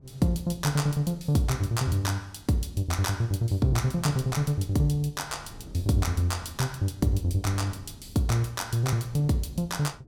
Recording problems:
wind on the microphone; below 220 Hz, SNR 21 dB

